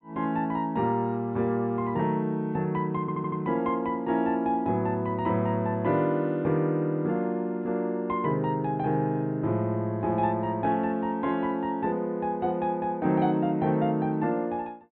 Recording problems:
treble cut off; nothing above 4 kHz
stutter; at 3 s

